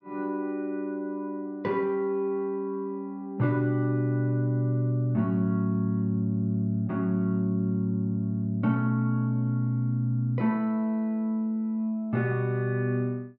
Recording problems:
none

